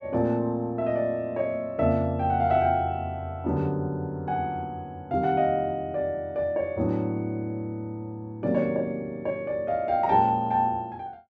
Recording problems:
none

